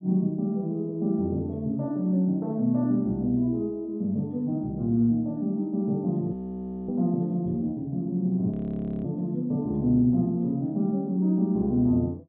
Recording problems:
treble missing; nothing above 4 kHz
audio freezing; at 6.5 s for 0.5 s and at 8.5 s for 0.5 s

